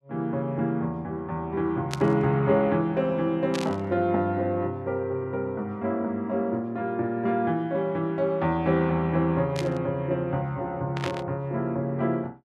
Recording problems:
static burst; 4 times, first at 2 s; peak -2 dB vs average level

